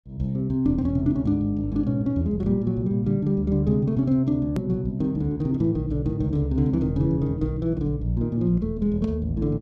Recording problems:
click at an edit; at 4.5 s

